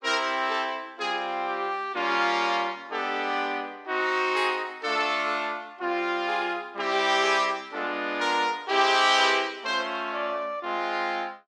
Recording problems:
none

